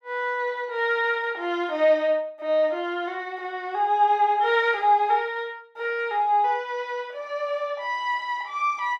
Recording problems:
none

